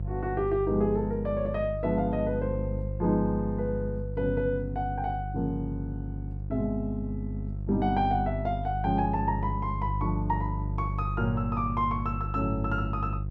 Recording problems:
hum; 50 Hz, harmonics up to 350 Hz, SNR 4 dB

